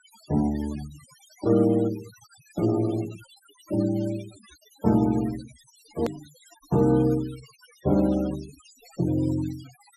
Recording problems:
noise reduction artefacts; signal-to-artefact ratio 20 dB
click at an edit; at 6 s

